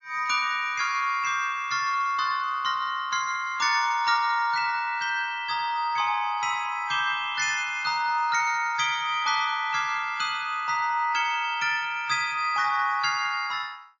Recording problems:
lossy compression; MP3, log-spectral distance 2 dB, nothing above 5.8 kHz

